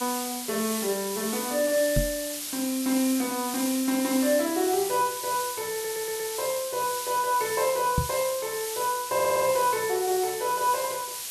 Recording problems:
hiss; slope +3 dB per octave, SNR 5 dB
knock on the microphone; at 2 s and at 8 s; peak +4 dB vs average level
audio stuttering; at 5.5 s and at 9 s

